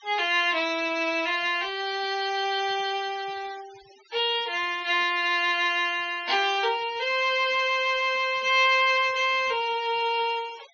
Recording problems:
low-pass filter; nothing above 6.6 kHz
noise reduction artefacts; signal-to-artefact ratio 22 dB

